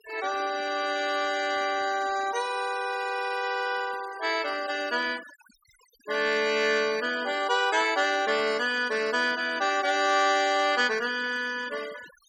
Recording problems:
noise reduction artefacts; signal-to-artefact ratio 16 dB

